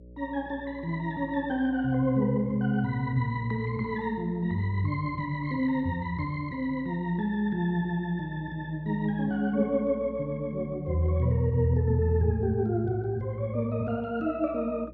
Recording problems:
electrical hum; 60 Hz, harmonics up to 600 Hz, SNR 21 dB

